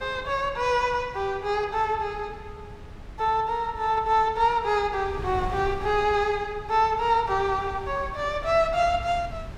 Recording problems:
wind noise; below 170 Hz, SNR 16 dB

